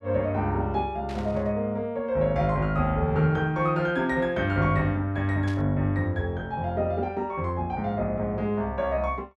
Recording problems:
burst of static; at 1 s and at 5.5 s; peak -13 dB vs average level

